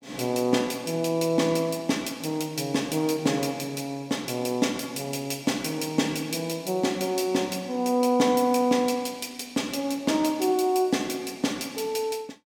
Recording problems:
none

